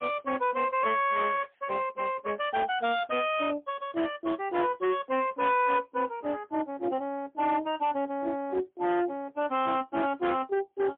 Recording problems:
telephone audio; 240 Hz to 3.5 kHz, AMR-NB, then MP3
distorted audio; hard clipping, signal-to-distortion ratio 10 dB

